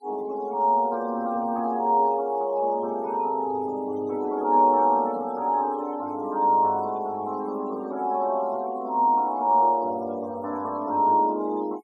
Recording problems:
denoising artefacts; signal-to-artefact ratio 26 dB

